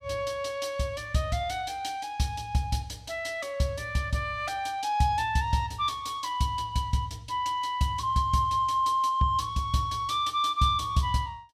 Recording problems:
none

